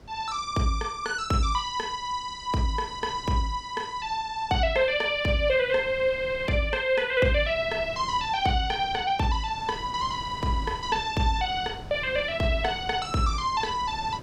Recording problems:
wind on the microphone; below 430 Hz, SNR 18 dB

